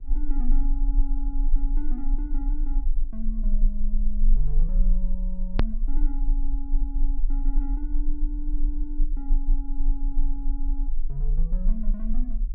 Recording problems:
treble missing; nothing above 5.5 kHz
hum; 50 Hz, harmonics up to 550 Hz, SNR 25 dB
rumble; below 32 Hz, strongest tone 24 Hz, SNR -11 dB
hard cut with a click; at 5.5 s

